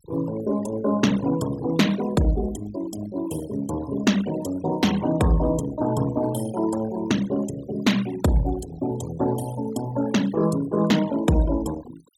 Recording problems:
denoising artefacts; signal-to-artefact ratio 15 dB

